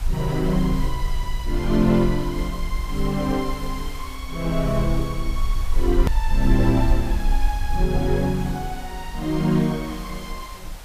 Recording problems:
hiss; SNR 17 dB
rumble; below 44 Hz, strongest tone 24 Hz, SNR 4 dB
edit click; at 6 s

